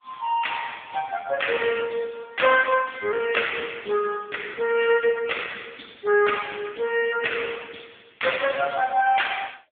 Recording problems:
phone line; 190 Hz to 3.4 kHz, AMR-NB

